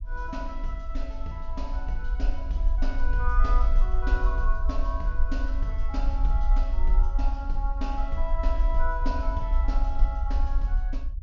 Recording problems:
treble cut off; nothing above 7 kHz
low-frequency rumble; below 44 Hz, SNR -7 dB

